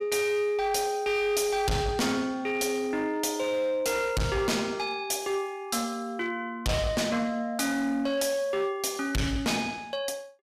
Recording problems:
distortion; hard clipping, uneven, signal-to-distortion ratio 7 dB

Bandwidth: 14.5 kHz